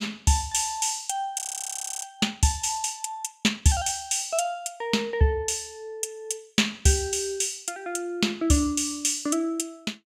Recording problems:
frozen audio; at 1.5 s for 0.5 s

